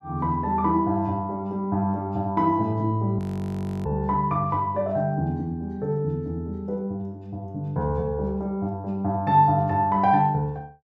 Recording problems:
frozen audio; at 3 s for 0.5 s

